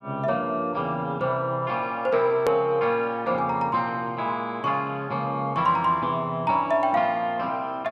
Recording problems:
click at an edit; at 2.5 s

